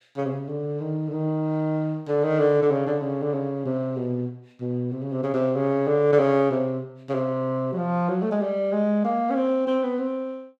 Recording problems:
none

